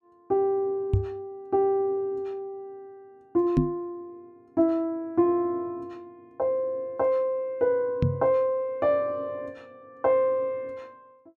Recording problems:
microphone bump; at 1 s, at 3.5 s and at 8 s; peak +8 dB vs average level

